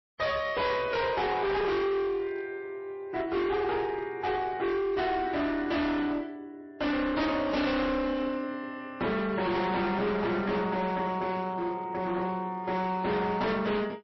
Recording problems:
lossy compression; MP3, log-spectral distance 2 dB, nothing above 5.7 kHz
distortion; hard clipping, uneven, signal-to-distortion ratio 6 dB

